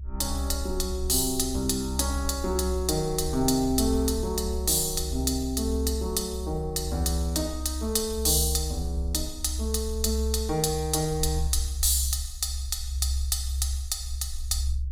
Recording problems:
low-frequency rumble; below 68 Hz, strongest tone 66 Hz, SNR 5 dB

